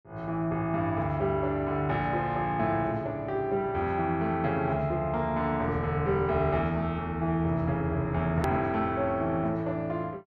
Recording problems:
hard cut with a click; at 8.5 s

